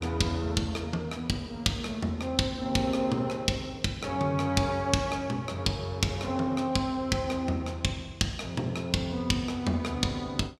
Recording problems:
none

